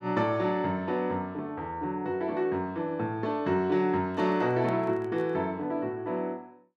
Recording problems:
handling noise; from 4 to 5.5 s; peak -12 dB vs average level

